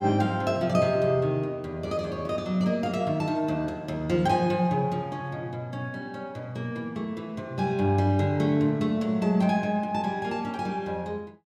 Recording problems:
none

